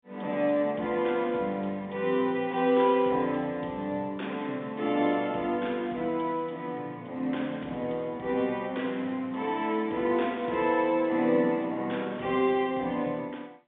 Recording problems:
telephone audio; 220 Hz to 3.7 kHz, G.711

